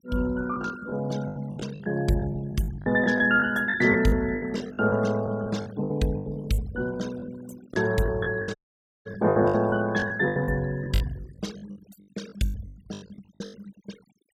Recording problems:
denoising artefacts; signal-to-artefact ratio 20 dB
packet loss; 17% of the sound replaced, filled with the last packet
audio cutting out; at 8.5 s for 0.5 s

